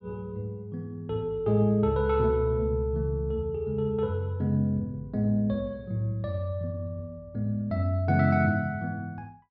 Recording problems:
none

